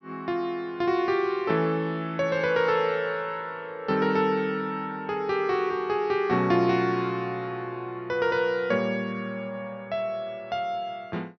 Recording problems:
treble cut off; nothing above 6 kHz

